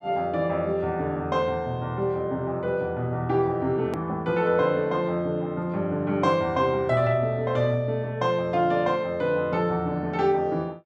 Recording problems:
click at an edit; at 4 s

